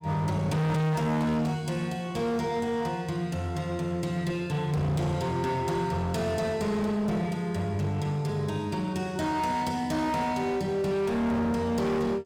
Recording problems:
distortion; hard clipping, signal-to-distortion ratio 6 dB

